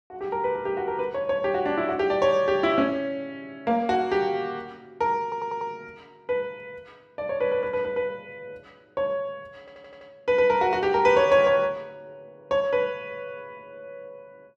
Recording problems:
audio stuttering; at 5 s and at 9.5 s

